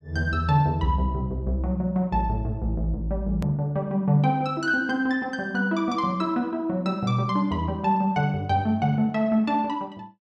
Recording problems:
hard cut with a click; at 3.5 s

